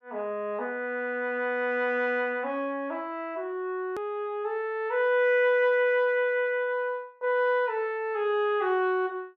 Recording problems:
hard cut with a click; at 4 s

